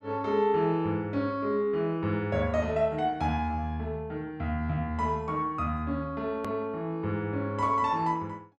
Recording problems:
click at an edit; at 6.5 s

